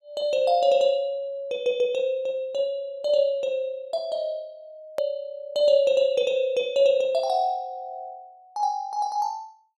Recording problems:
edit click; at 5 s

